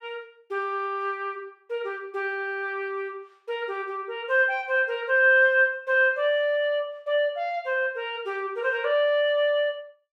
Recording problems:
none

